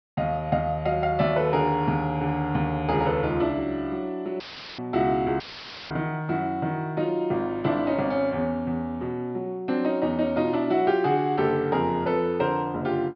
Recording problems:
treble cut off; nothing above 5.5 kHz
dropout; at 4.5 s and at 5.5 s for 0.5 s; filled with static

